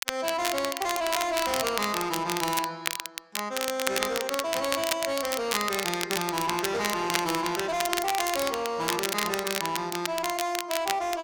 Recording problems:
distortion; hard clipping, signal-to-distortion ratio 8 dB
crackling; vinyl, SNR 3 dB

